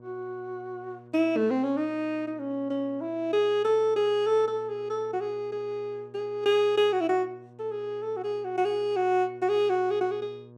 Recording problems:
hum; 60 Hz, harmonics up to 1.1 kHz, SNR 24 dB

